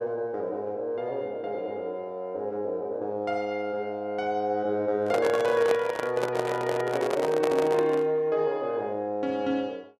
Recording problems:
microphone handling noise; from 5 to 8 s; peak +2 dB vs average level

